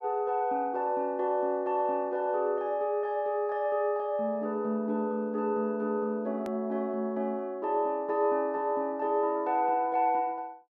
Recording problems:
hard cut with a click; at 6.5 s

